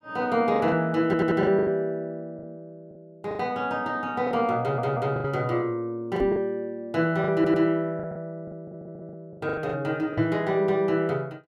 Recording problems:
lost packets; 10% of the sound replaced, filled with the last packet
audio stuttering; 4 times, first at 1 s
microphone bump; at 6 s and at 10 s; peak -1 dB vs average level

